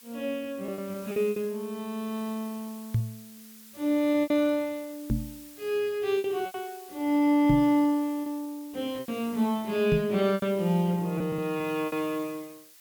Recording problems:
background hiss; slope +4 dB per octave, SNR 20 dB
lost packets; 7% of the sound replaced, filled with repeated pitch periods
microphone bump; 4 times, first at 3 s; peak +5 dB vs average level

